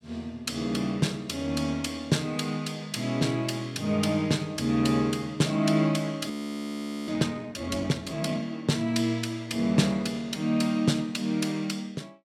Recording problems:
frozen audio; at 6.5 s for 1 s

